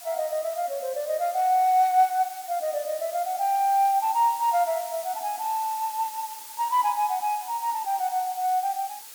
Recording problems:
background hiss; slope +2 dB per octave, SNR 14 dB

